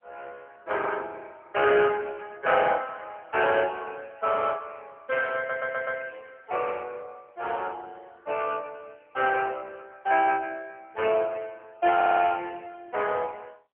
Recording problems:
phone line; 320 Hz to 3.1 kHz, AMR-NB
audio stuttering; at 5.5 s and at 12 s

